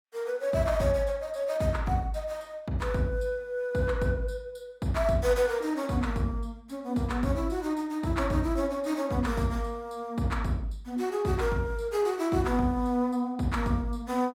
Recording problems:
none

